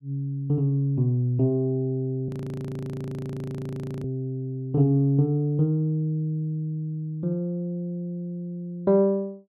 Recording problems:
frozen audio; at 2.5 s for 2 s

